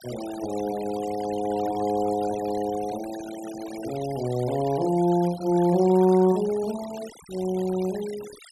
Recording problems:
noise reduction artefacts; signal-to-artefact ratio 17 dB

